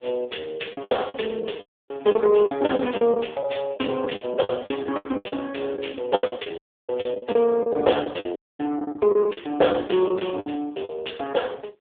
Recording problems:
phone line; 320 Hz to 3.5 kHz, AMR-NB
packet loss; 15% of the sound replaced, filled with the last packet
dropout; at 1.5 s, at 6.5 s and at 8.5 s

